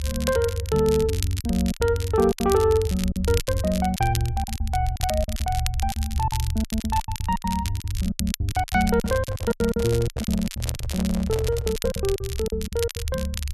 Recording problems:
low-frequency rumble; below 76 Hz, strongest tone 72 Hz, SNR 6 dB
crackling; vinyl, SNR 10 dB
lost packets; 16% of the sound replaced, filled with silence
handling noise; from 9 to 12 s; peak -6 dB vs average level

